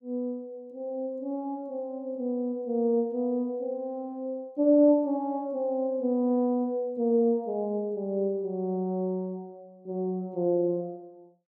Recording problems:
none

